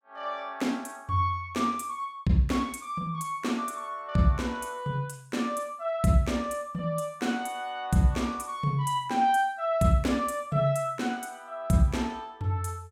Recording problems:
none

